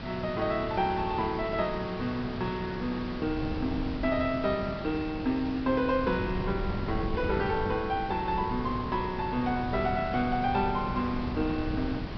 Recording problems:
treble cut off; nothing above 5.5 kHz
hiss; SNR 11 dB
wind on the microphone; below 240 Hz, SNR 9 dB

